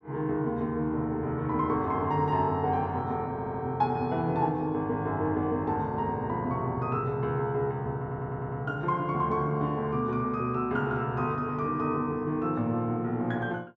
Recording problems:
audio stuttering; at 3.5 s and at 8 s

